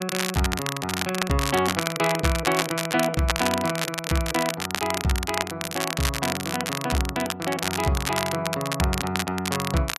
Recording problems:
crackling; vinyl, SNR 2 dB

